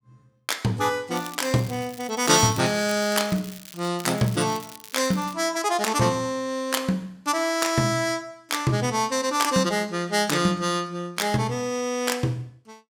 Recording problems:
crackle; from 1 to 4 s and from 4 to 5.5 s; loose cable, SNR 18 dB

